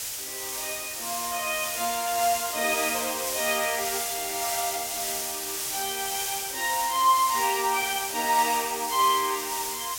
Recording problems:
background hiss; slope +2 dB per octave, SNR 2 dB

